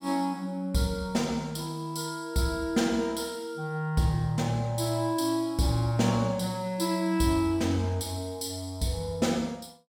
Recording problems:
none

